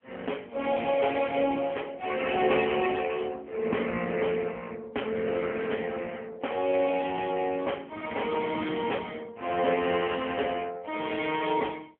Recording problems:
telephone audio; 280 Hz to 3.3 kHz, AMR-NB

